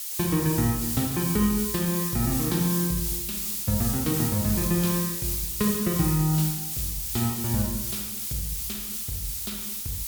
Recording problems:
hiss; slope +5 dB per octave, SNR 1 dB

